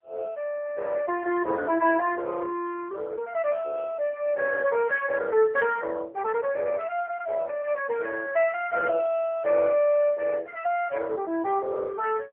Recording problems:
phone line; 260 Hz to 3.3 kHz, AMR-NB

